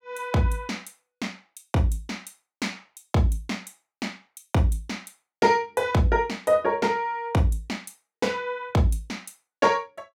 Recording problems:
none

